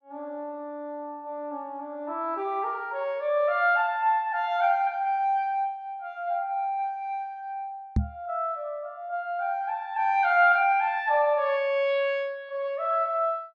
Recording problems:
microphone bump; at 8 s; peak +5 dB vs average level

